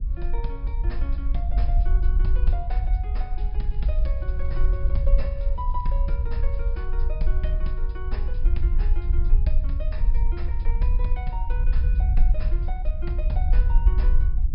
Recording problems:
treble missing; nothing above 5.5 kHz
rumble; below 52 Hz, SNR -13 dB
crackle; from 3.5 to 6 s and at 6.5 s; loose cable, SNR 27 dB

